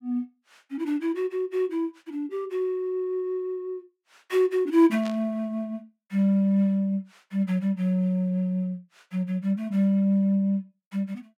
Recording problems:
burst of static; at 5 s; peak -10 dB vs average level

